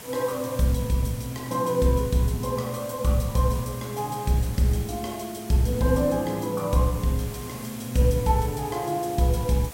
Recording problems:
background hiss; slope -3 dB per octave, SNR 15 dB

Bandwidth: 16 kHz